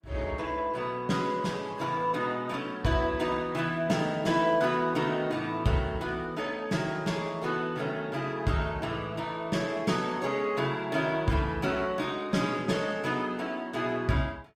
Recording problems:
lossy compression; Opus, log-spectral distance 3 dB

